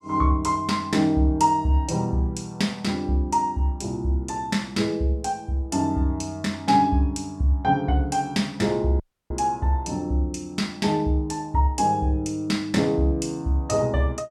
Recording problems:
dropout; at 9 s

